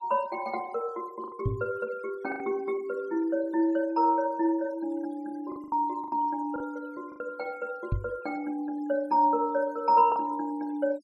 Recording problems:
noise reduction artefacts; signal-to-artefact ratio 26 dB
lost packets; 5% of the sound replaced, filled with the last packet
microphone bump; at 1.5 s and at 8 s; peak +4 dB vs average level

